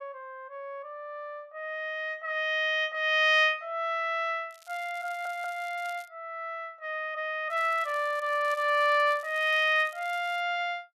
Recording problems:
crackling; from 4.5 to 6 s and from 7.5 to 10 s; loose cable, SNR 26 dB
stutter; at 5 s

